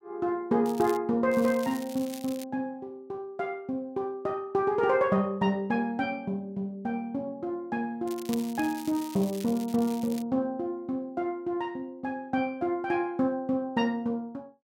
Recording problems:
crackling; at 0.5 s, from 1.5 to 2.5 s and from 8 to 10 s; loose cable, SNR 16 dB

